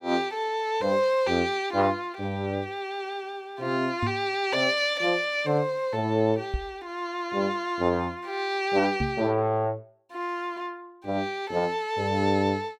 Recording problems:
microphone thump; at 4 s, at 6.5 s and at 9 s; peak +1 dB vs average level

